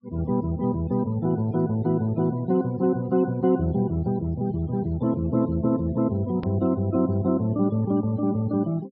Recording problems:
low-pass filter; nothing above 5.5 kHz
noise reduction artefacts; signal-to-artefact ratio 23 dB
edit click; at 6.5 s

